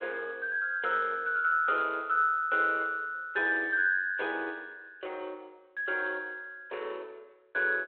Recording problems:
telephone audio; 340 Hz to 3.7 kHz, G.726

